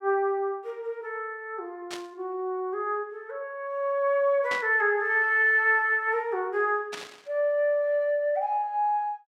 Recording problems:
burst of static; at 2 s, at 4.5 s and at 7 s; peak -6 dB vs average level

